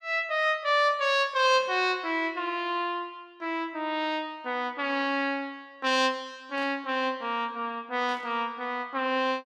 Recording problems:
static burst; at 1.5 s, at 6.5 s and at 8 s; peak -13 dB vs average level

